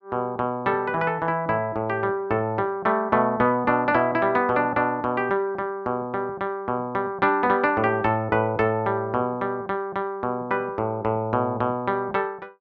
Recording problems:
none

